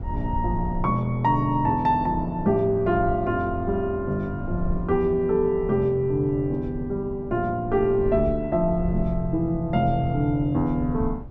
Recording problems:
rumble; below 88 Hz, SNR 12 dB

